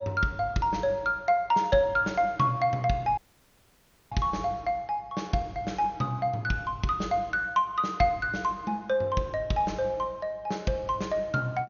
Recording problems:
lossy compression; MP2, log-spectral distance 2 dB, nothing above 6.7 kHz
dropout; at 3 s for 1 s

